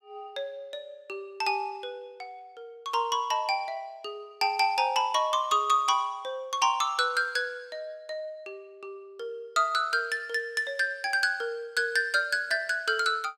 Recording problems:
none

